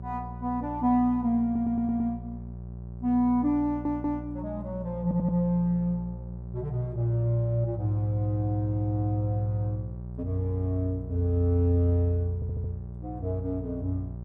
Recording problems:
hum; 60 Hz, harmonics up to 600 Hz, SNR 11 dB
stutter; 4 times, first at 1.5 s

